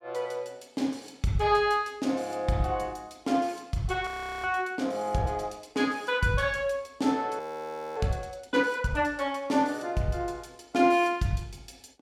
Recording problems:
frozen audio; at 4 s and at 7.5 s for 0.5 s

